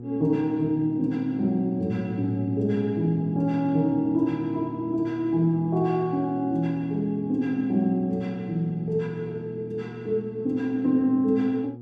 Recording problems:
hum; 60 Hz, harmonics up to 480 Hz, SNR 14 dB

